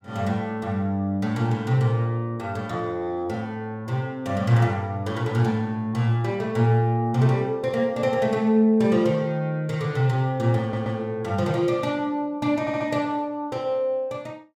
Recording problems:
stutter; at 11 s and at 13 s

